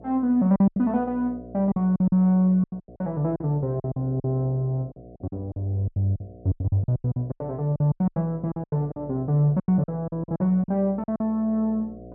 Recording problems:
mains hum; 60 Hz, harmonics up to 720 Hz, SNR 20 dB
lost packets; 16% of the sound replaced, filled with silence

